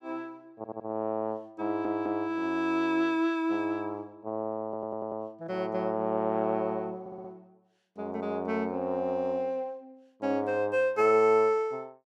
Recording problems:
stutter; 4 times, first at 0.5 s

